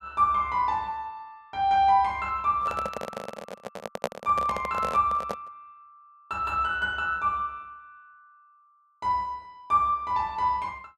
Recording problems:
microphone handling noise; from 2.5 to 5.5 s; peak +2 dB vs average level

